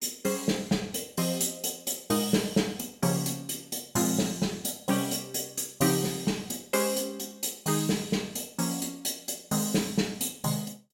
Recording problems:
none

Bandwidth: 16 kHz